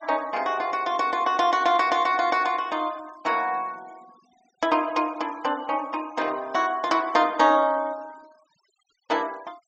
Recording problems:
low-pass filter; nothing above 8 kHz
noise reduction artefacts; signal-to-artefact ratio 25 dB

